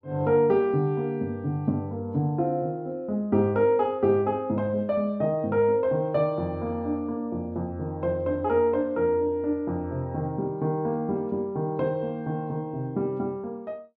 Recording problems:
none

